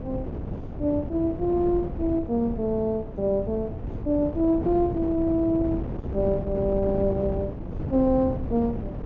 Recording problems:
low-pass filter; nothing above 6.8 kHz
wind noise; below 290 Hz, SNR 7 dB

